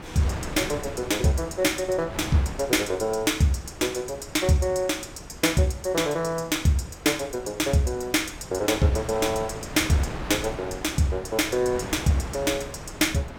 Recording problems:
wind noise; below 1 kHz, SNR 12 dB

